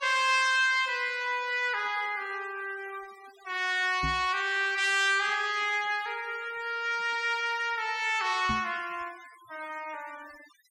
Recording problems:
noise reduction artefacts; signal-to-artefact ratio 22 dB
microphone bump; at 4 s and at 8.5 s; peak -4 dB vs average level

